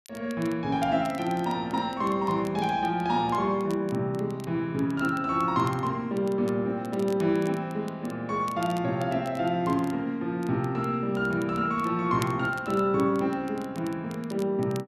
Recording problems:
crackle; vinyl, SNR 23 dB

